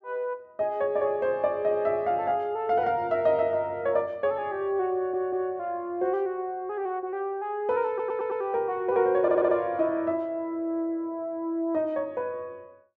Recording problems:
audio stuttering; at 5 s, at 8 s and at 9 s

